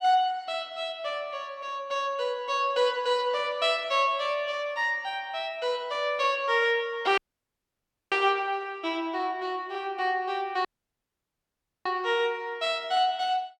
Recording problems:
dropout; at 7 s for 1 s and at 11 s for 1 s

